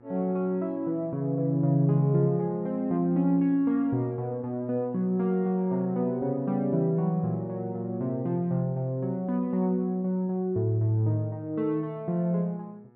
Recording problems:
hum; 60 Hz, harmonics up to 1.8 kHz, SNR 28 dB

